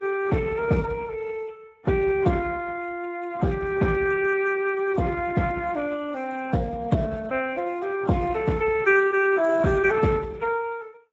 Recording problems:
lossy codec; MP3, then Speex, log-spectral distance 5 dB

